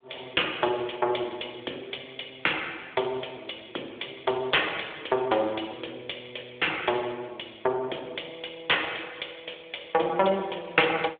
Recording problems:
phone line; 300 Hz to 3.6 kHz, AMR-NB

